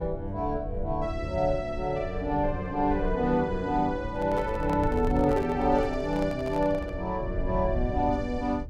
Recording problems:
low-frequency rumble; below 94 Hz, SNR 9 dB
microphone handling noise; from 4 to 7 s; peak -6 dB vs average level

